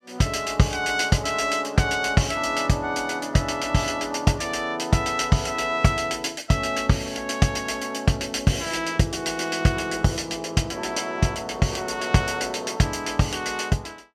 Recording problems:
none

